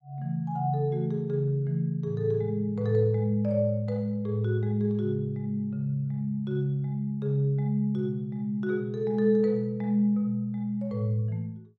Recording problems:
none

